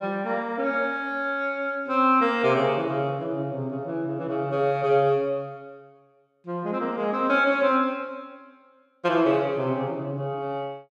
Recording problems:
none

